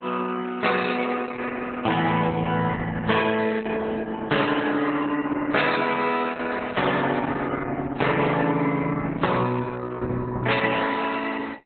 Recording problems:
codec artefacts; MP3, then Opus, log-spectral distance 5 dB, nothing above 4 kHz

